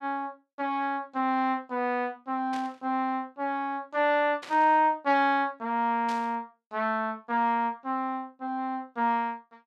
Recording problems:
static burst; at 2.5 s, at 4.5 s and at 6 s; peak -10 dB vs average level

